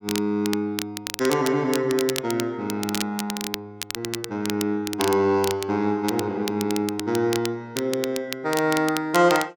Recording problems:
crackling; vinyl, SNR 8 dB

